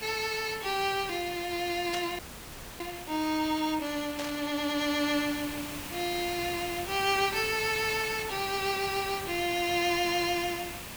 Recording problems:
background hiss; SNR 9 dB
static burst; at 2 s and at 4 s; peak -2 dB vs average level
frozen audio; at 2 s for 0.5 s

